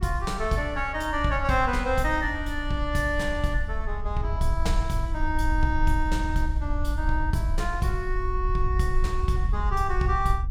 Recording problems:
wind noise; below 60 Hz, SNR 3 dB

